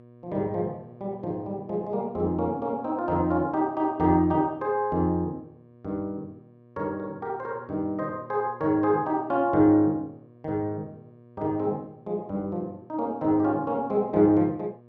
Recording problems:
hum; 60 Hz, harmonics up to 1.2 kHz, SNR 24 dB

